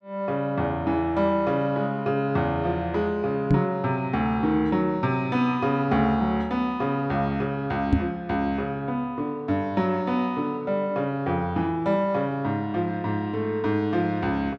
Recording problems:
microphone bump; at 3.5 s and at 8 s; peak +7 dB vs average level

